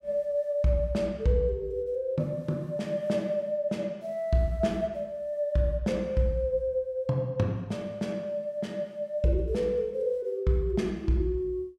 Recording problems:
none

